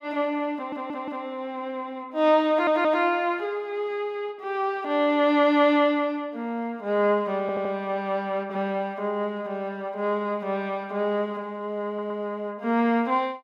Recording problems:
stutter; 4 times, first at 0.5 s

